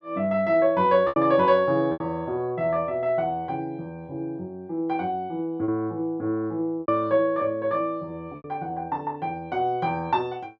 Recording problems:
packet loss; 3% of the sound replaced, filled with repeated pitch periods

